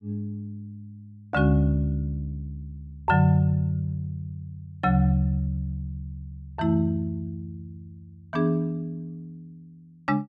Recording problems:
none

